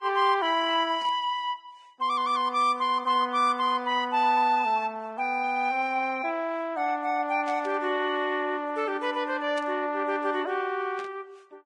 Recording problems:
codec artefacts; Vorbis, log-spectral distance 2 dB, nothing above 9.5 kHz
static burst; 4 times, first at 1 s; peak -13 dB vs average level

